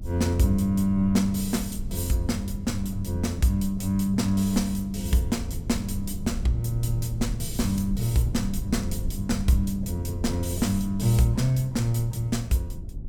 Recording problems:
rumble; below 110 Hz, SNR 10 dB

